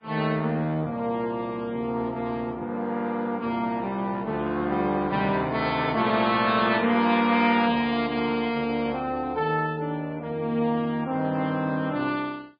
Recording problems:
lossy codec; MP3, then Vorbis, log-spectral distance 2 dB

